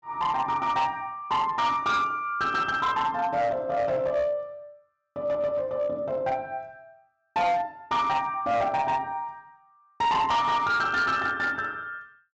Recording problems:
treble missing; nothing above 8 kHz
distorted audio; hard clipping, uneven, signal-to-distortion ratio 11 dB

